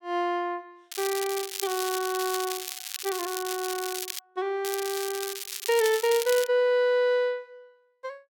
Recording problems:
crackle; from 1 to 4 s and from 4.5 to 6.5 s; loose cable, SNR 6 dB

